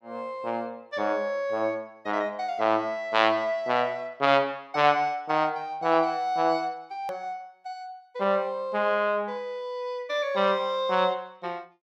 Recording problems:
hard cut with a click; at 7 s

